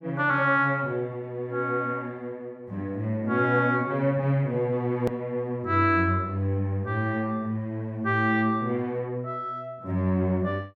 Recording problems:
click at an edit; at 5 s

